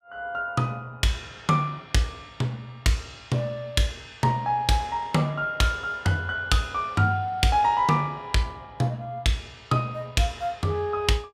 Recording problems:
none

